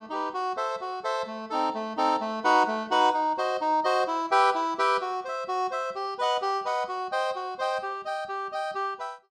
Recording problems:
none

